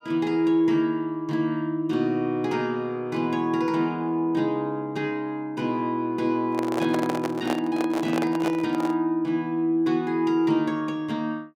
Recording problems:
microphone handling noise; from 6.5 to 9 s; peak 0 dB vs average level

